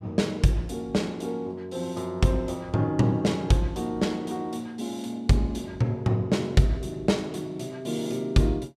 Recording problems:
none

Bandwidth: 15 kHz